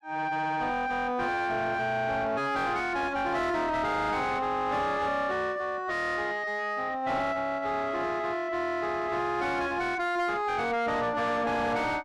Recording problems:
distortion; soft clipping, signal-to-distortion ratio 7 dB

